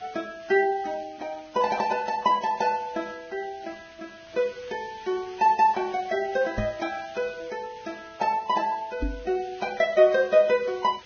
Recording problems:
codec artefacts; Vorbis, log-spectral distance 4 dB, nothing above 6.3 kHz
hiss; SNR 23 dB
microphone thump; at 6.5 s and at 9 s; peak -1 dB vs average level

